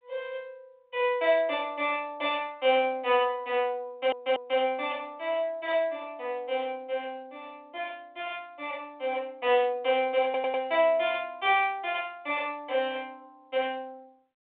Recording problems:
telephone audio; 320 Hz to 3.6 kHz, G.726
audio stuttering; at 4 s and at 10 s

